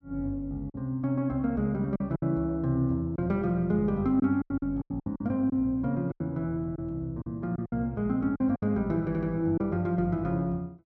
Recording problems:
packet loss; 8% of the sound replaced, filled with silence
stutter; at 9 s

